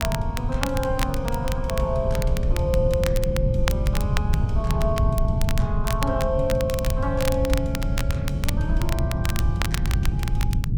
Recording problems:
low-frequency rumble; below 130 Hz, SNR -2 dB
crackle; vinyl, SNR 7 dB

